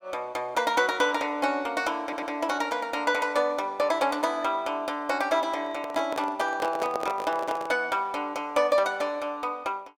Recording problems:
audio stuttering; at 2 s
handling noise; from 5.5 to 8 s; peak -1 dB vs average level

